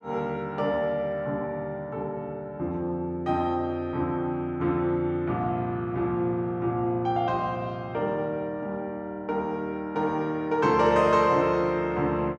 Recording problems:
none

